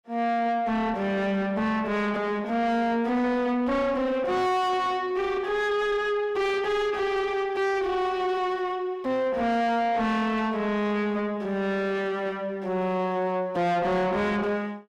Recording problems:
distortion; soft clipping, signal-to-distortion ratio 7 dB

